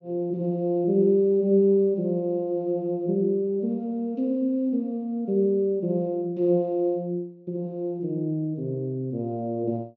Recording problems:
low-pass filter; nothing above 7.2 kHz

